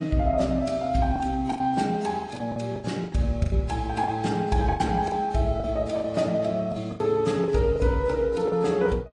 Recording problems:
lossy codec; MP3, then AAC, log-spectral distance 2 dB, nothing above 8.5 kHz
lost packets; 10% of the sound replaced, filled with the last packet

